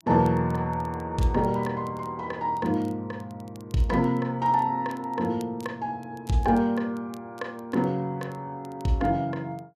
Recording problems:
crackling; vinyl, SNR 29 dB

